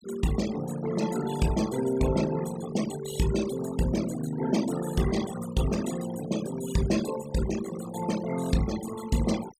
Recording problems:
noise reduction artefacts; signal-to-artefact ratio 12 dB

